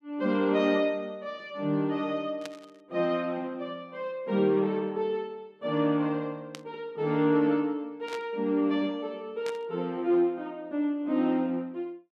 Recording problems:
static burst; 4 times, first at 2.5 s; peak -7 dB vs average level

